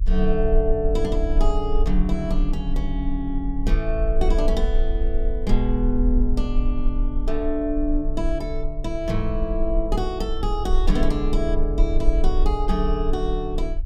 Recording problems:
low-frequency rumble; below 42 Hz, strongest tone 24 Hz, SNR 0 dB

